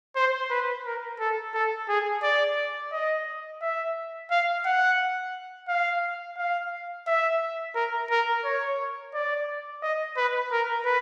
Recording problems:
none

